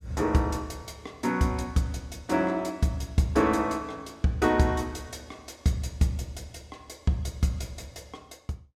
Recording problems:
none

